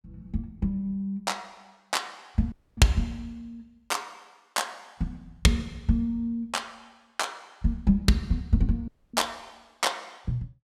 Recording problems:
dropout; at 2.5 s and at 9 s

